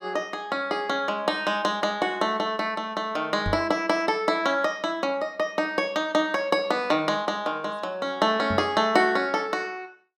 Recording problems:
microphone bump; at 3.5 s and at 8.5 s; peak -1 dB vs average level

